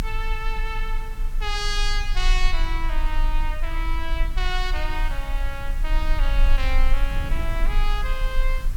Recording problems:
background hiss; SNR 17 dB
rumble; below 34 Hz, strongest tone 24 Hz, SNR -3 dB
wind on the microphone; below 140 Hz, SNR 10 dB

